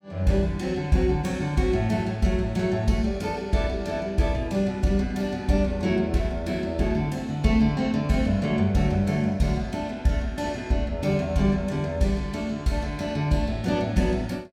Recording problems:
none

